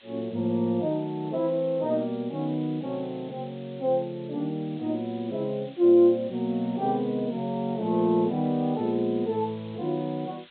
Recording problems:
low-pass filter; nothing above 4 kHz
background hiss; SNR 25 dB

